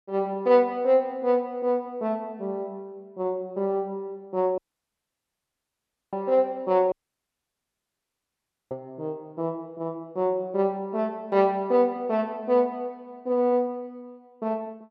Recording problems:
audio cutting out; at 4.5 s for 1.5 s and at 7 s for 2 s

